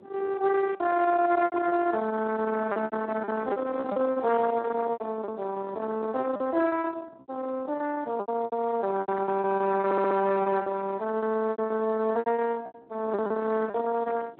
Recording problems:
telephone audio; 240 Hz to 2.2 kHz, Speex
distorted audio; soft clipping, signal-to-distortion ratio 14 dB
wind noise; below 930 Hz, SNR 15 dB
lost packets; 13% of the sound replaced, filled with repeated pitch periods
stutter; at 10 s

